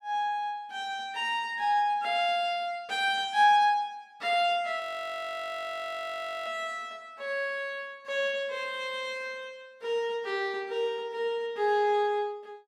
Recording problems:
audio freezing; at 5 s for 1.5 s

